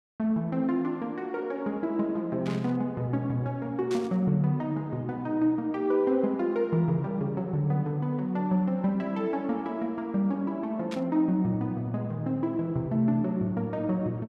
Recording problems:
burst of static; at 2.5 s, at 4 s and at 11 s; peak -8 dB vs average level

